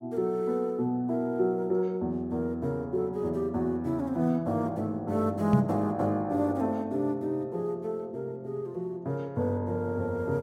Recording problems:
microphone bump; at 5.5 s; peak +9 dB vs average level

